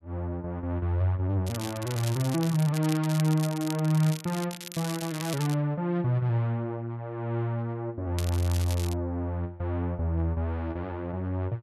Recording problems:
crackle; from 1.5 to 5.5 s and at 8 s; loose cable, SNR 11 dB

